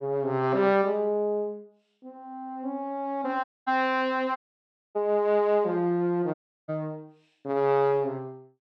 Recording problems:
dropout; at 3.5 s, at 4.5 s for 0.5 s and at 6.5 s

